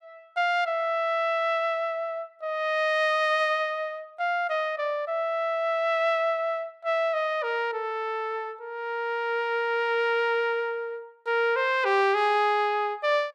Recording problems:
none

